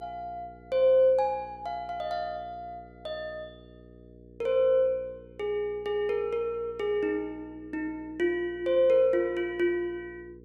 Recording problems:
electrical hum; 60 Hz, harmonics up to 480 Hz, SNR 24 dB

